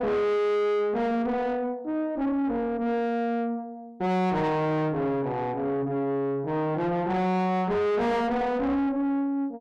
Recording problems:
distorted audio; soft clipping, signal-to-distortion ratio 6 dB

